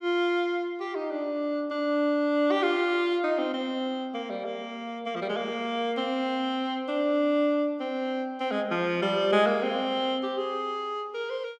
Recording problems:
none

